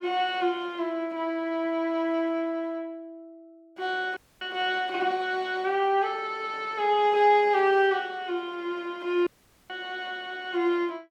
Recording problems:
audio cutting out; at 4 s and at 9.5 s

